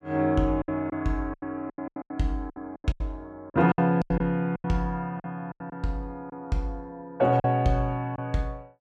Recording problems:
lost packets; 13% of the sound replaced, filled with silence

